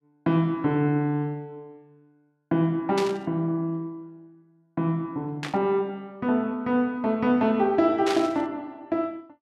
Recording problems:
static burst; at 3 s, at 5.5 s and at 8 s; peak -1 dB vs average level

